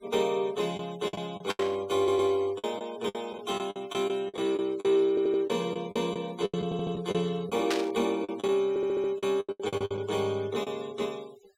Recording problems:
denoising artefacts; signal-to-artefact ratio 22 dB
packet loss; 12% of the sound replaced, filled with the last packet
burst of static; at 1.5 s and at 7.5 s; peak +2 dB vs average level
audio stuttering; 4 times, first at 2 s

